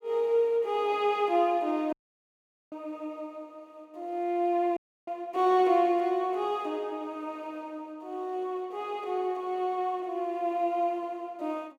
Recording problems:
audio cutting out; at 2 s for 1 s and at 5 s

